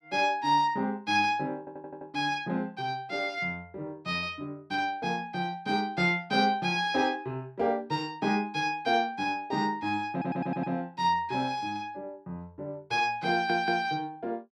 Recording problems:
audio stuttering; at 1.5 s, at 10 s and at 13 s

